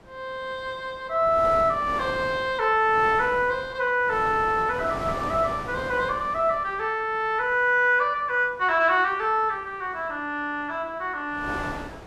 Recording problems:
wind noise; below 1.1 kHz, SNR 13 dB

